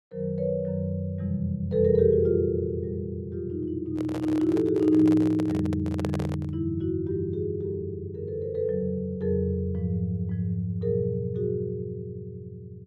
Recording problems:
handling noise; from 4 to 6.5 s; peak -2 dB vs average level

